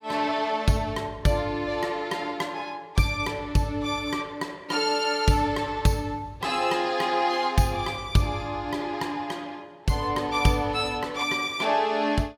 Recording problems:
none

